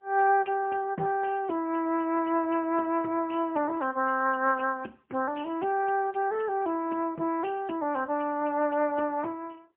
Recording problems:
phone line; 280 Hz to 2.8 kHz, AMR-NB, then MP3

